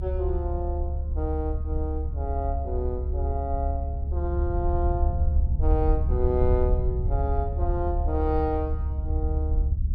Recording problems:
rumble; below 74 Hz, SNR -3 dB

